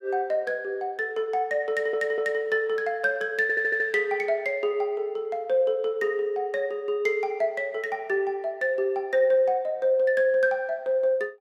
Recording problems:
audio stuttering; at 1.5 s and at 3.5 s

